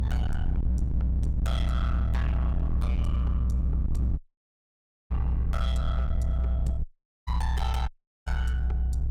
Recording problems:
distorted audio; hard clipping, signal-to-distortion ratio 7 dB
low-frequency rumble; below 70 Hz, strongest tone 62 Hz, SNR -11 dB
audio cutting out; at 4 s for 1 s, at 7 s and at 8 s

